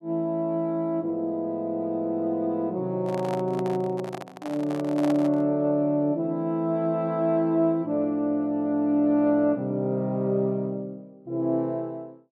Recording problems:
handling noise; from 3 to 5.5 s; peak -4 dB vs average level

